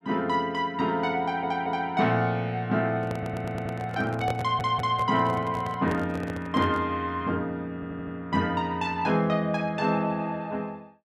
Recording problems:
stutter; 4 times, first at 1 s
handling noise; from 3 to 7 s; peak -1 dB vs average level

